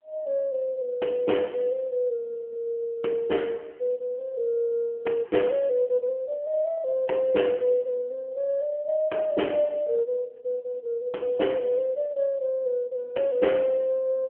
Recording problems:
phone line; 240 Hz to 3.1 kHz, AMR-NB

